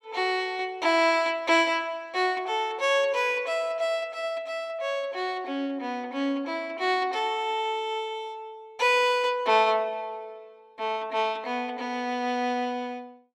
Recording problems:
none

